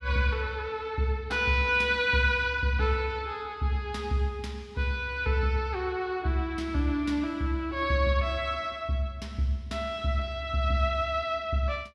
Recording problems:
none

